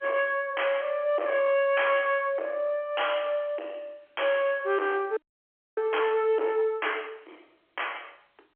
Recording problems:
telephone audio; 280 Hz to 3.3 kHz, G.711
distortion; soft clipping, signal-to-distortion ratio 10 dB
audio freezing; at 5 s for 0.5 s

